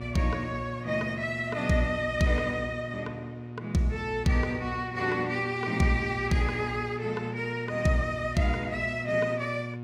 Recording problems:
hum; 60 Hz, harmonics up to 1.1 kHz, SNR 10 dB

